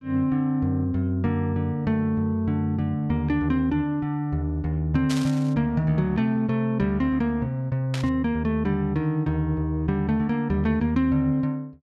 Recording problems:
static burst; at 5 s and at 8 s; peak -4 dB vs average level

